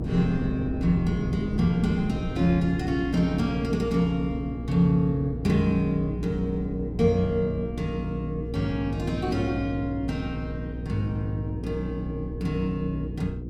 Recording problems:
mains hum; 60 Hz, harmonics up to 480 Hz, SNR 8 dB
wind on the microphone; below 230 Hz, SNR 12 dB

